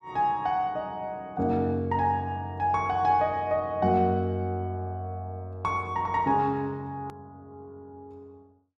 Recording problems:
hard cut with a click; at 7 s

